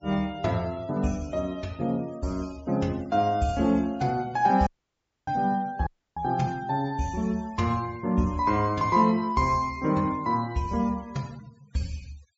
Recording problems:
treble cut off; nothing above 7.5 kHz
denoising artefacts; signal-to-artefact ratio 24 dB
audio cutting out; at 4.5 s for 0.5 s and at 6 s

